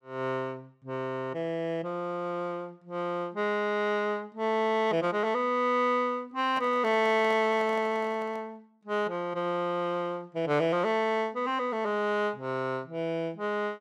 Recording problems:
microphone handling noise; from 6.5 to 8.5 s; peak -10 dB vs average level

